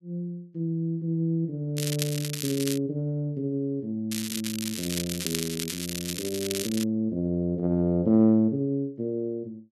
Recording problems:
crackling; from 2 to 3 s and from 4 to 7 s; loose cable, SNR 5 dB

